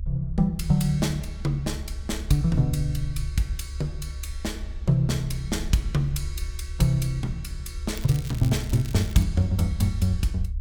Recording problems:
rumble; below 70 Hz, SNR 9 dB
crackling; from 8 to 9 s; loose cable, SNR 18 dB

